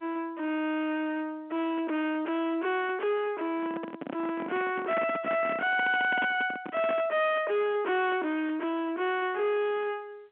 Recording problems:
telephone audio; 170 Hz to 3.6 kHz, G.711
distorted audio; soft clipping, signal-to-distortion ratio 8 dB
microphone handling noise; from 3.5 to 7 s; peak -2 dB vs average level

